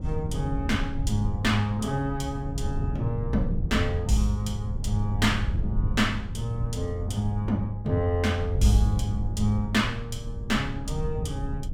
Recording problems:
low-frequency rumble; below 110 Hz, SNR 5 dB

